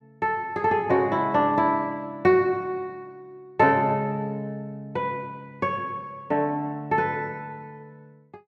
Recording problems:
none

